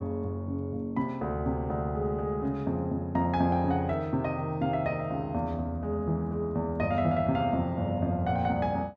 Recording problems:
none

